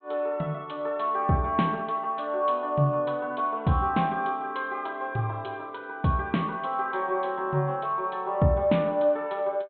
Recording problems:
treble missing; nothing above 4 kHz

